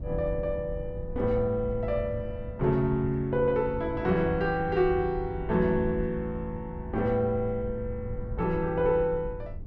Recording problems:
low-frequency rumble; below 98 Hz, SNR 11 dB

